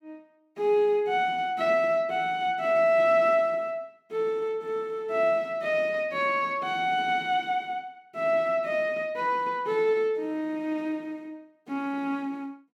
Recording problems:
none

